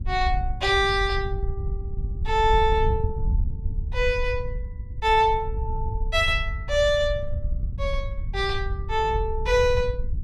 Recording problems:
wind noise; below 74 Hz, SNR 6 dB

